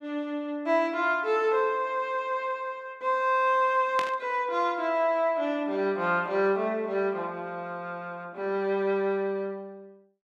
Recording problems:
burst of static; at 4 s; peak -2 dB vs average level

